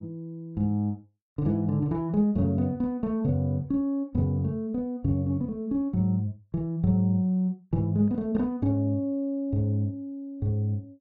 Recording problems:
none

